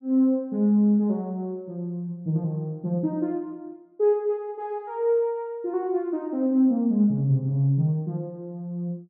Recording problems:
none

